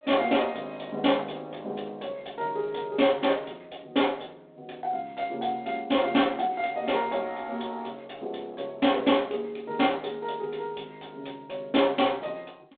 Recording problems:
phone line; 260 Hz to 3.7 kHz, G.726

